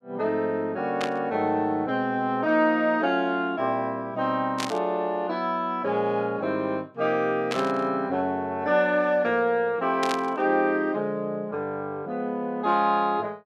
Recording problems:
burst of static; 4 times, first at 1 s; peak -1 dB vs average level

